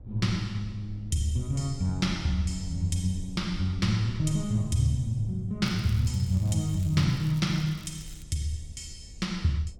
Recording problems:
rumble; below 80 Hz, SNR 17 dB
crackle; from 5.5 to 8 s; loose cable, SNR 24 dB

